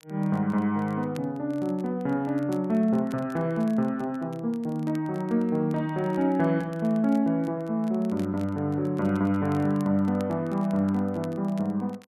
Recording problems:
crackle; vinyl, SNR 28 dB

